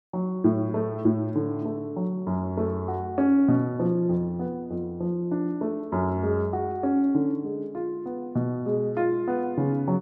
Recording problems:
none

